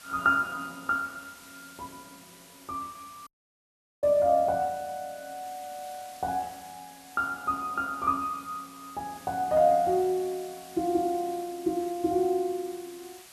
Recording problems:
background hiss; slope +1 dB per octave, SNR 20 dB
audio cutting out; at 3.5 s for 1 s

